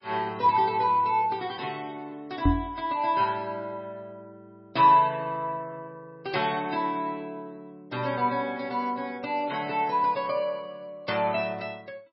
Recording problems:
lossy codec; MP3, log-spectral distance 2 dB, nothing above 5.3 kHz
microphone bump; at 2.5 s; peak +7 dB vs average level

